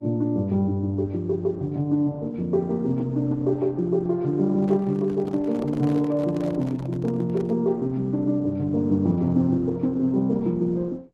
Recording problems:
lossy compression; Opus, log-spectral distance 2 dB
microphone handling noise; from 4.5 to 7.5 s; peak -10 dB vs average level

